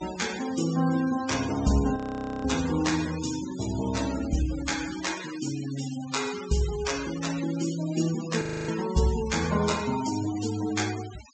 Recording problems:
treble cut off; nothing above 8 kHz
noise reduction artefacts; signal-to-artefact ratio 11 dB
frozen audio; at 2 s and at 8.5 s

